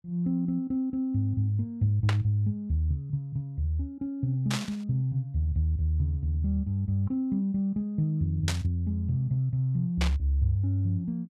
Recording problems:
static burst; 4 times, first at 2 s; peak +2 dB vs average level

